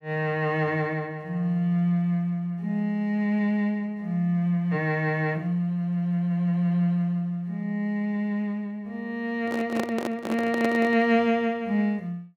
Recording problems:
microphone handling noise; from 9.5 to 11 s; peak 0 dB vs average level

